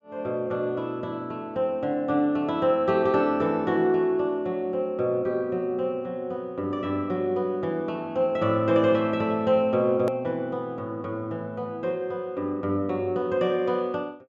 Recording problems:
treble missing; nothing above 8 kHz
click at an edit; at 10 s

